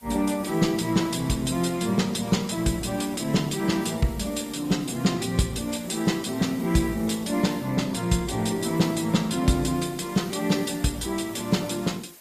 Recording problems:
lossy compression; Opus, log-spectral distance 6 dB, nothing above 14.7 kHz
hiss; SNR 22 dB

